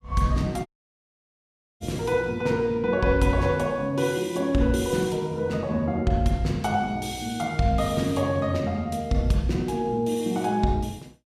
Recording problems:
audio cutting out; at 0.5 s for 1 s

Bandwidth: 14.5 kHz